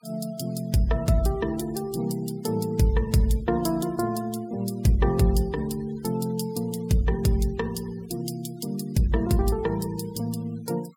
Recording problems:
noise reduction artefacts; signal-to-artefact ratio 24 dB

